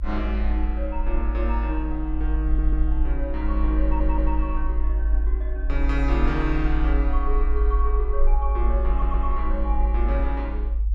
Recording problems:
rumble; below 52 Hz, strongest tone 52 Hz, SNR -5 dB
audio stuttering; at 2.5 s, at 4 s and at 9 s

